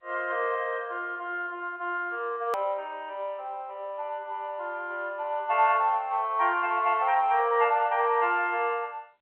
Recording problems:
phone line; 320 Hz to 3.5 kHz, G.711
edit click; at 2.5 s

